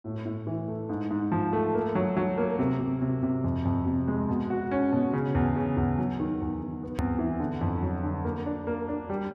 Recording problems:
click at an edit; at 7 s

